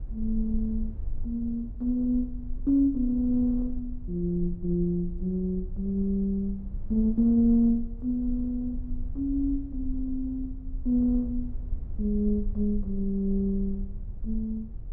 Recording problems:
low-frequency rumble; below 52 Hz, strongest tone 20 Hz, SNR 10 dB

